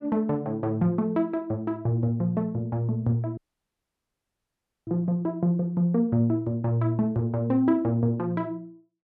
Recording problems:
audio cutting out; at 3.5 s for 1.5 s

